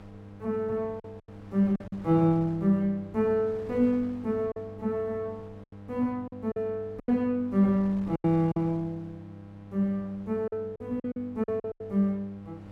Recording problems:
electrical hum; 50 Hz, harmonics up to 1.3 kHz, SNR 18 dB
wind on the microphone; below 760 Hz, SNR 25 dB
lost packets; 7% of the sound replaced, filled with silence

